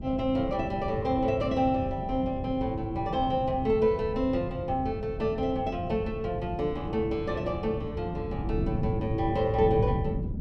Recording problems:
wind on the microphone; below 190 Hz, SNR 6 dB

